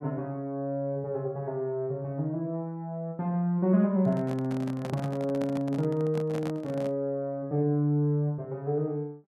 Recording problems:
microphone handling noise; from 4 to 7 s; peak -5 dB vs average level

